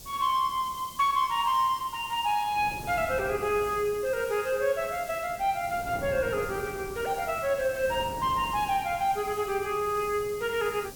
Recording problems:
background hiss; slope +7 dB per octave, SNR 17 dB
wind noise; below 450 Hz, SNR 17 dB

